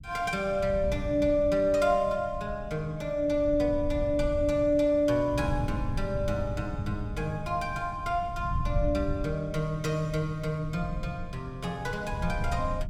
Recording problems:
rumble; below 120 Hz, SNR 9 dB

